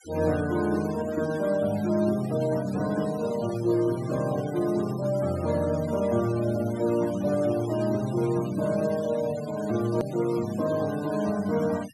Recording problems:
denoising artefacts; signal-to-artefact ratio 17 dB
hard cut with a click; at 10 s

